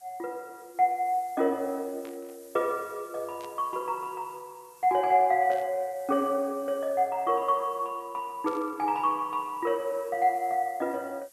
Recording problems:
hiss; SNR 25 dB
burst of static; 4 times, first at 2 s; peak -15 dB vs average level

